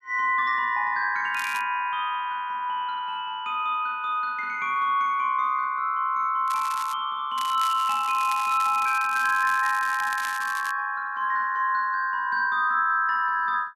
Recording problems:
crackling; at 1.5 s, at 6.5 s and from 7.5 to 11 s; loose cable, SNR 15 dB

